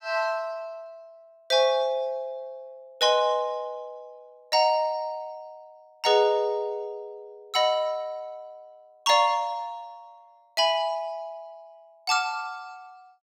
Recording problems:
none

